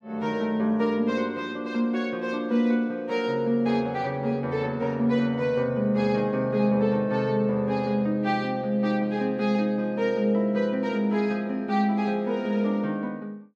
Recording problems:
none

